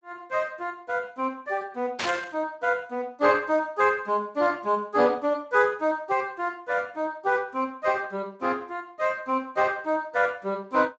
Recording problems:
lossy compression; Speex, log-spectral distance 3 dB
burst of static; at 2 s; peak +1 dB vs average level

